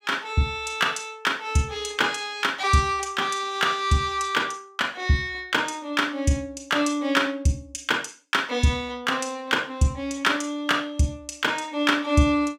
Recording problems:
none

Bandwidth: 16 kHz